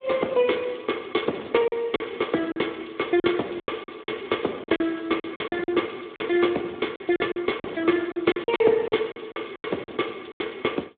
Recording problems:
phone line; 240 Hz to 3.6 kHz, Speex
packet loss; 11% of the sound replaced, filled with silence

